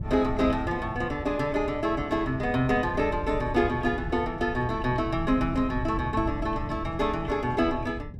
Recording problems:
wind on the microphone; below 120 Hz, SNR 10 dB

